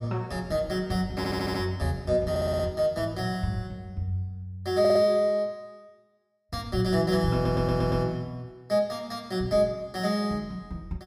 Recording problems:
audio stuttering; 4 times, first at 1 s

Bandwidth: 15 kHz